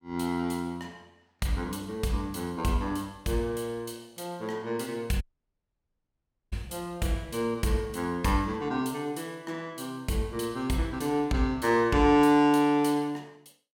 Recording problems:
audio cutting out; at 5 s for 1.5 s

